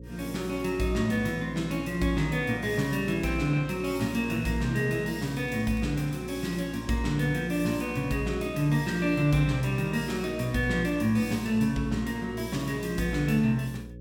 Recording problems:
hum; 60 Hz, harmonics up to 540 Hz, SNR 15 dB
crackling; at 5 s and at 13 s; loose cable, SNR 29 dB

